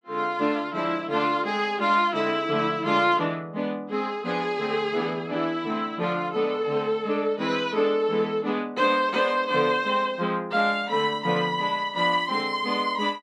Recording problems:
none

